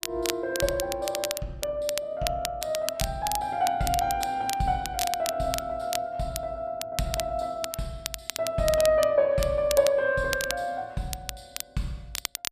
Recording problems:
crackling; vinyl, SNR 7 dB

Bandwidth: 14.5 kHz